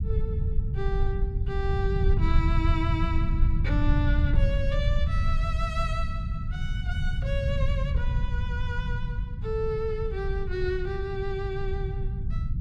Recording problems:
rumble; below 100 Hz, SNR -5 dB

